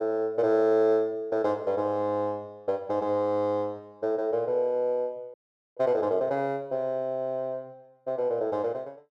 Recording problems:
audio freezing; at 5.5 s

